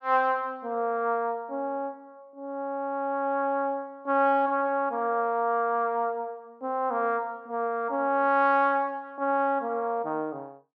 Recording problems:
none

